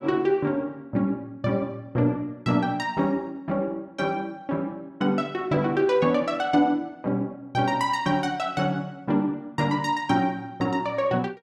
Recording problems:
none

